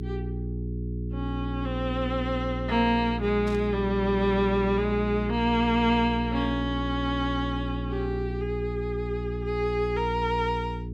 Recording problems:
mains hum; 60 Hz, harmonics up to 420 Hz, SNR 5 dB
static burst; at 3.5 s; peak -12 dB vs average level

